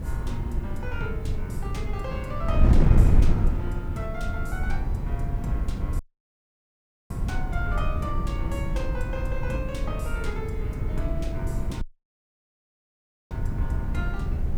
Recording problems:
hum; 60 Hz, harmonics up to 1.1 kHz, SNR 17 dB
background hiss; slope -3 dB per octave, SNR 25 dB
low-frequency rumble; below 72 Hz, SNR 7 dB
wind noise; below 100 Hz, SNR -8 dB
audio cutting out; at 6 s for 1 s and at 12 s for 1.5 s

